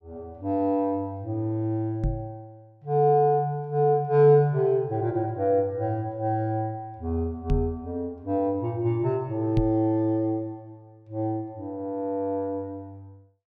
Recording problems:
knock on the microphone; at 2 s, at 7.5 s and at 9.5 s; peak +3 dB vs average level

